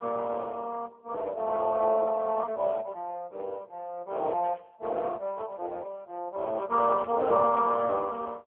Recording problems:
telephone audio; 320 Hz to 3.3 kHz, AMR-NB
burst of static; at 4.5 s and at 7 s; peak -16 dB vs average level

